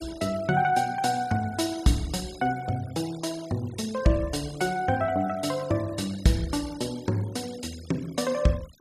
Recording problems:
denoising artefacts; signal-to-artefact ratio 19 dB

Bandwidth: 14.5 kHz